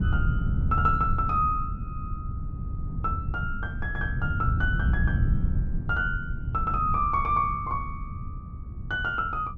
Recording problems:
wind noise; below 130 Hz, SNR 2 dB

